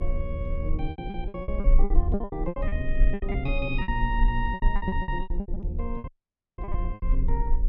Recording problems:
electrical hum; 60 Hz, harmonics up to 540 Hz, SNR 9 dB
low-frequency rumble; below 40 Hz, strongest tone 20 Hz, SNR -2 dB
packet loss; 19% of the sound replaced, filled with repeated pitch periods
dropout; at 6 s for 0.5 s

